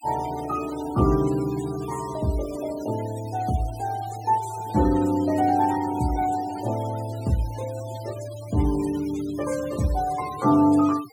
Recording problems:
noise reduction artefacts; signal-to-artefact ratio 17 dB

